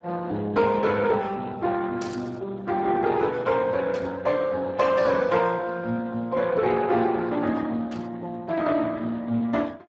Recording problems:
lossy compression; Speex, log-spectral distance 3 dB
static burst; at 2 s, at 4 s and at 8 s; peak -11 dB vs average level

